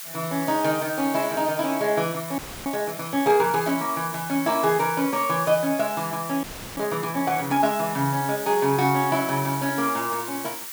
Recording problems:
hiss; SNR 10 dB
frozen audio; at 2.5 s and at 6.5 s

